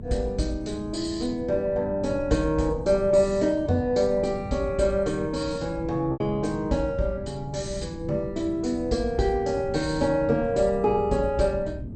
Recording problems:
lossy compression; MP2, log-spectral distance 3 dB, nothing above 8.5 kHz
hum; 60 Hz, harmonics up to 660 Hz, SNR 19 dB
wind noise; below 190 Hz, SNR 14 dB
lost packets; 0.7% of the sound replaced, filled with repeated pitch periods

